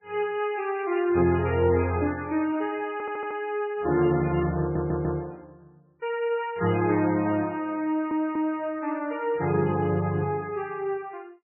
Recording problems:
lossy codec; MP3, log-spectral distance 2 dB, nothing above 2.5 kHz
audio stuttering; at 3 s, at 4.5 s and at 8 s

